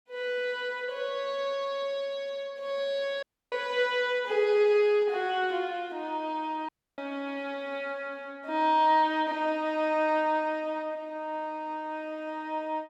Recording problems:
dropout; at 3 s and at 6.5 s

